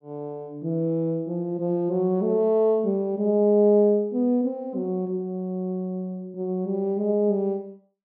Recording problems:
none

